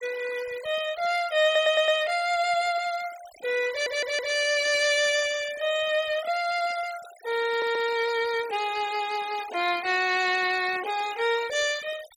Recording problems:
denoising artefacts; signal-to-artefact ratio 16 dB
audio stuttering; at 1.5 s, at 3.5 s and at 7.5 s

